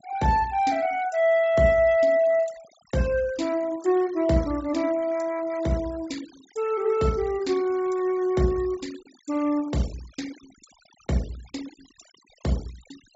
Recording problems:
treble missing; nothing above 8 kHz
denoising artefacts; signal-to-artefact ratio 22 dB

